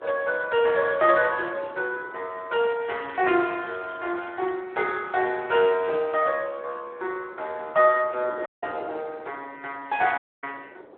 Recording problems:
phone line; 300 Hz to 3.7 kHz, Speex
wind on the microphone; below 700 Hz, SNR 21 dB
crackling; at 0.5 s and from 3 to 4.5 s; loose cable, SNR 27 dB
dropout; at 8.5 s and at 10 s

